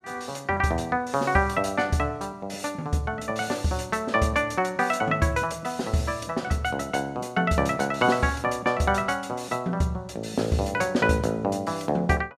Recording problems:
none

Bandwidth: 14.5 kHz